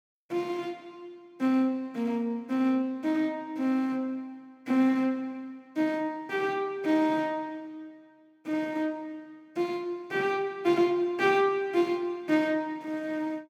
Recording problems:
none

